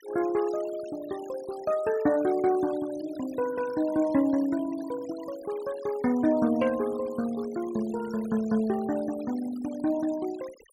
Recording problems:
noise reduction artefacts; signal-to-artefact ratio 20 dB

